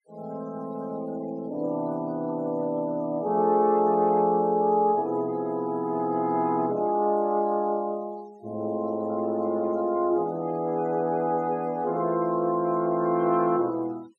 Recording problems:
noise reduction artefacts; signal-to-artefact ratio 28 dB

